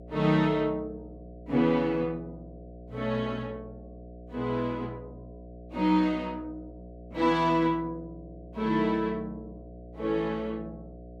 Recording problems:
hum; 60 Hz, harmonics up to 720 Hz, SNR 18 dB

